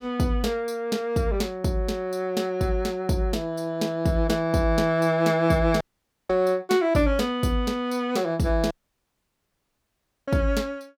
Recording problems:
dropout; at 6 s and at 8.5 s for 1.5 s

